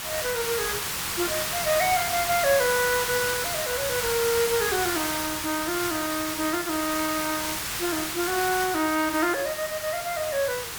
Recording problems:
hiss; slope 0 dB per octave, SNR 1 dB

